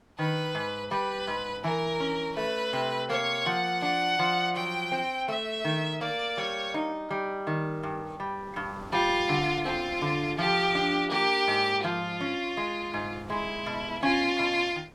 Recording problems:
wind noise; below 1 kHz, SNR 22 dB

